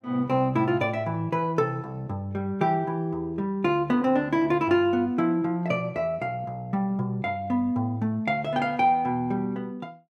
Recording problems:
none

